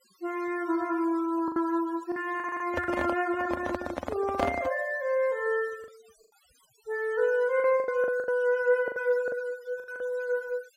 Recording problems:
noise reduction artefacts; signal-to-artefact ratio 21 dB
packet loss; 8% of the sound replaced, filled with the last packet
stutter; at 2.5 s
handling noise; from 2.5 to 4.5 s; peak +3 dB vs average level

